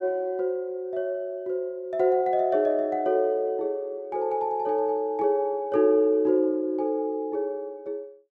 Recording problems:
none

